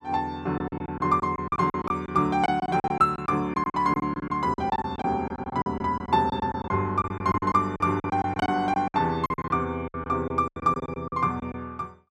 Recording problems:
packet loss; 17% of the sound replaced, filled with silence

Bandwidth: 13 kHz